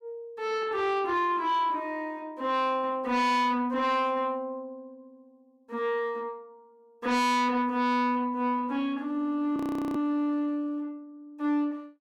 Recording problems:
distorted audio; soft clipping, signal-to-distortion ratio 7 dB
frozen audio; at 9.5 s

